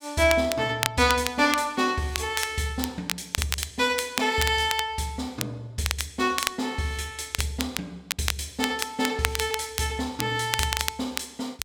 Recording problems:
crackle; vinyl, SNR 5 dB

